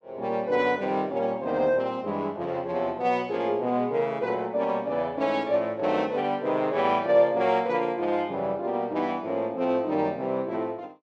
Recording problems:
none

